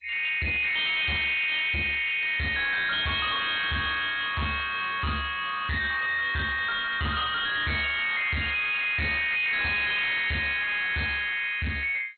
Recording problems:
lossy codec; MP2, log-spectral distance 8 dB, nothing above 4.2 kHz
distorted audio; soft clipping, signal-to-distortion ratio 6 dB

